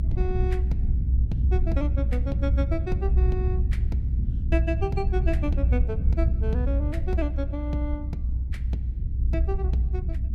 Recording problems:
low-frequency rumble; below 78 Hz, strongest tone 62 Hz, SNR -7 dB

